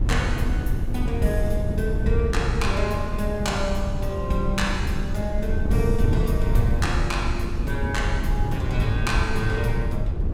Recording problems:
wind noise; below 110 Hz, SNR -1 dB

